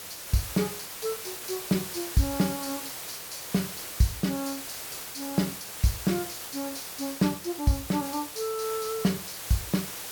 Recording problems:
background hiss; slope -1 dB per octave, SNR 6 dB

